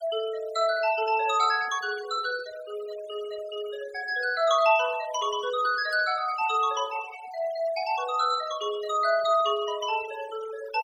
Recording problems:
noise reduction artefacts; signal-to-artefact ratio 16 dB

